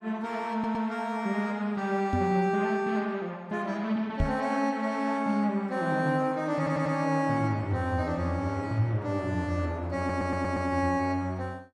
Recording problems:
audio stuttering; at 0.5 s, at 6.5 s and at 10 s
microphone thump; at 2 s and at 4 s; peak +4 dB vs average level

